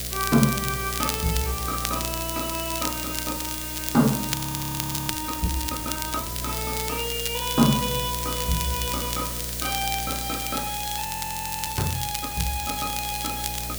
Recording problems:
hum; 60 Hz, harmonics up to 720 Hz, SNR 9 dB
background hiss; SNR 3 dB
crackling; vinyl, SNR 5 dB
frozen audio; at 4.5 s for 1 s and at 11 s for 0.5 s

